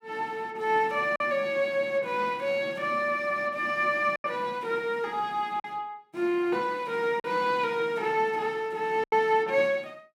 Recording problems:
packet loss; 3% of the sound replaced, filled with silence

